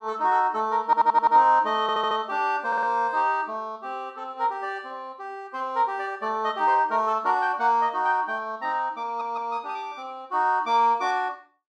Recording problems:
audio stuttering; 4 times, first at 1 s

